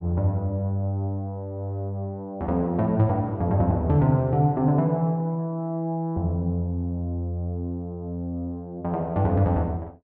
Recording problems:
none

